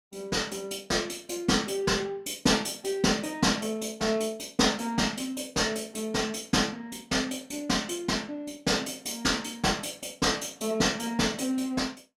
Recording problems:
none

